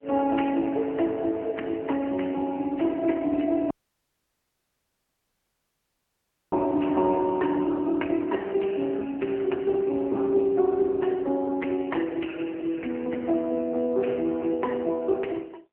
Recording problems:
phone line; 220 Hz to 2.9 kHz, AMR-NB
audio cutting out; at 3.5 s for 3 s

